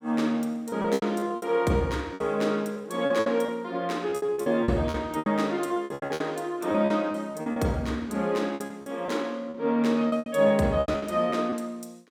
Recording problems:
packet loss; 15% of the sound replaced, filled with repeated pitch periods

